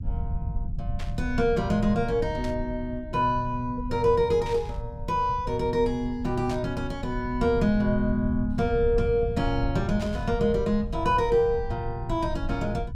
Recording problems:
low-frequency rumble; below 100 Hz, SNR 9 dB
burst of static; 5 times, first at 1 s; peak -11 dB vs average level

